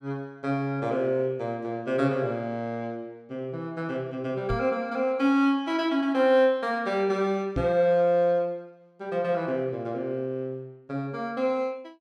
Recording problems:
knock on the microphone; at 4.5 s and at 7.5 s; peak +1 dB vs average level

